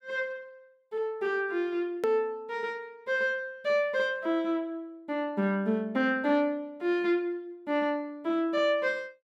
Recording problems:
hard cut with a click; at 2 s

